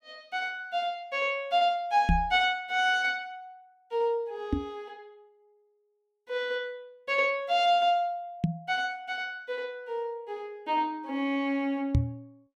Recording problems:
microphone thump; 4 times, first at 2 s; peak +7 dB vs average level

